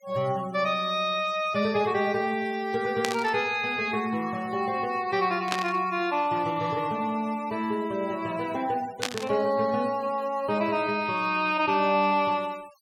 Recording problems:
denoising artefacts; signal-to-artefact ratio 23 dB
static burst; at 3 s, at 5.5 s and at 9 s; peak +3 dB vs average level

